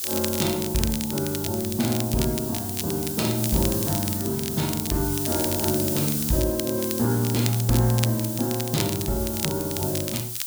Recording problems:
background hiss; SNR 4 dB
crackle; vinyl, SNR 7 dB

